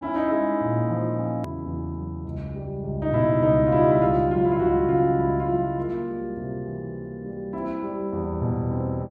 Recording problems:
click at an edit; at 1.5 s

